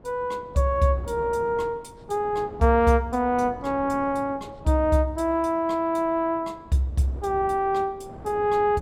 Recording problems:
wind noise; below 490 Hz, SNR 19 dB

